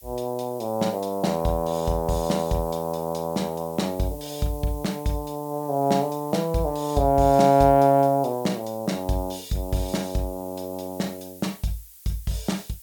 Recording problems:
hiss; slope +6 dB per octave, SNR 20 dB

